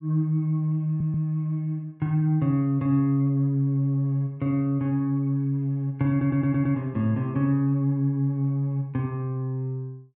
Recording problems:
stutter; at 1 s and at 6 s

